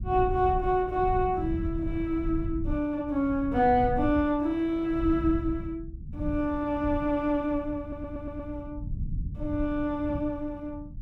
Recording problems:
rumble; below 110 Hz, SNR 9 dB
stutter; at 8 s

